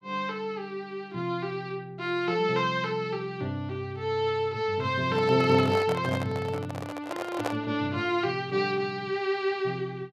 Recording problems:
handling noise; from 5 to 7.5 s; peak +2 dB vs average level

